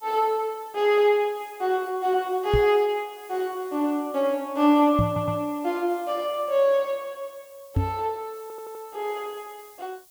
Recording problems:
hiss; SNR 25 dB
microphone bump; at 2.5 s, at 5 s and at 8 s; peak +4 dB vs average level
audio stuttering; at 5 s and at 8.5 s

